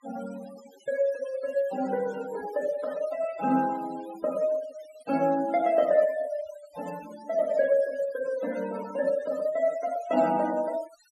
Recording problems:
noise reduction artefacts; signal-to-artefact ratio 18 dB

